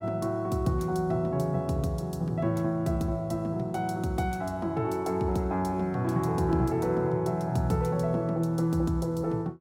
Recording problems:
none

